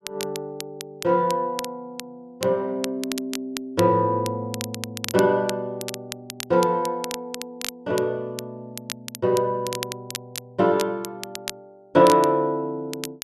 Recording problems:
crackling; vinyl, SNR 12 dB

